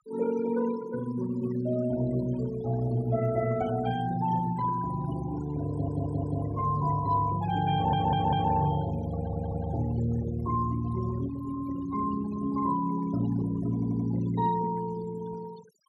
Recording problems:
noise reduction artefacts; signal-to-artefact ratio 16 dB
stutter; 4 times, first at 5.5 s

